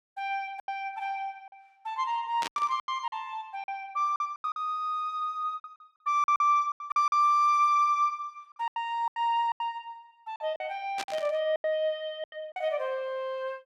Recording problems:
lost packets; 11% of the sound replaced, filled with silence
burst of static; at 2.5 s and at 11 s; peak -1 dB vs average level

